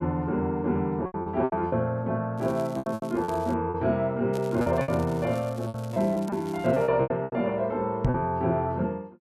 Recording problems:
packet loss; 11% of the sound replaced, filled with repeated pitch periods
crackling; from 2.5 to 3.5 s and from 4.5 to 7 s; loose cable, SNR 23 dB
microphone thump; at 8 s; peak +6 dB vs average level

